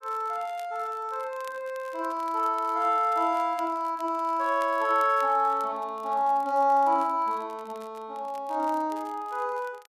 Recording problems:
crackling; vinyl, SNR 27 dB

